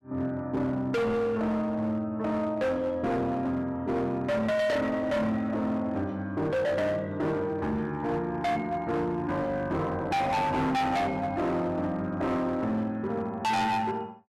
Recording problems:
distortion; hard clipping, signal-to-distortion ratio 7 dB

